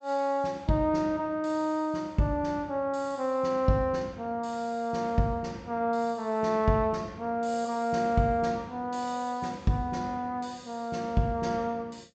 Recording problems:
treble cut off; nothing above 8 kHz

